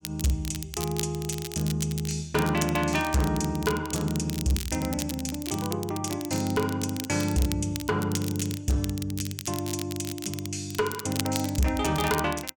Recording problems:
distorted audio; hard clipping, signal-to-distortion ratio 12 dB
crackle; vinyl, SNR 9 dB

